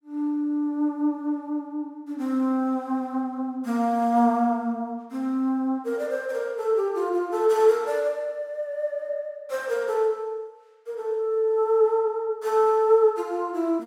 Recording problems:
none

